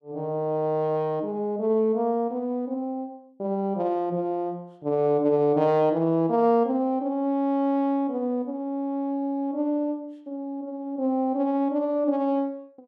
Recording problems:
none

